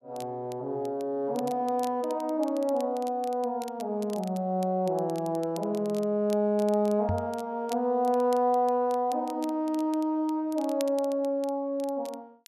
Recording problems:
crackling; vinyl, SNR 22 dB
microphone bump; at 7 s; peak +2 dB vs average level

